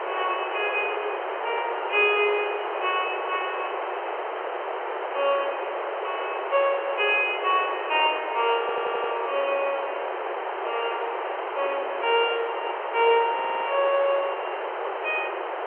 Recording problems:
phone line; 320 Hz to 3.2 kHz, G.711
background hiss; SNR 4 dB
audio stuttering; at 8.5 s and at 13 s

